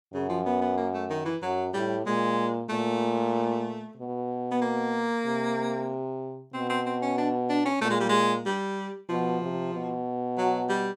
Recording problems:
none

